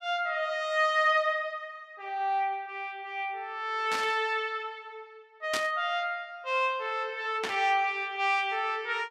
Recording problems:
static burst; at 4 s, at 5.5 s and at 7.5 s; peak +1 dB vs average level

